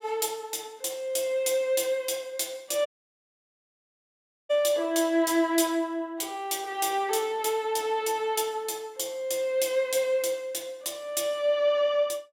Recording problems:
dropout; at 3 s for 1.5 s

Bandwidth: 16.5 kHz